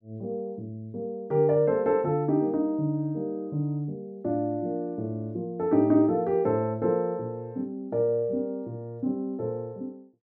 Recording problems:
none

